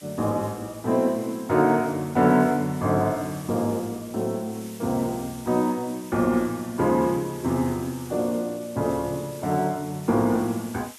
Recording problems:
hiss; slope +1 dB per octave, SNR 19 dB

